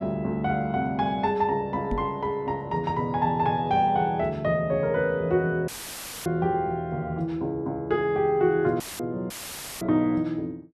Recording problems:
microphone bump; at 2 s; peak -1 dB vs average level
dropout; at 5.5 s for 0.5 s, at 9 s and at 9.5 s for 0.5 s; filled with static

